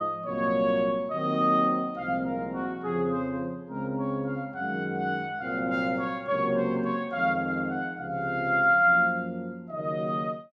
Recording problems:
none

